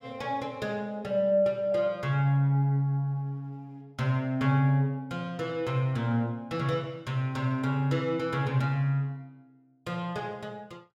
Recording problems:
none

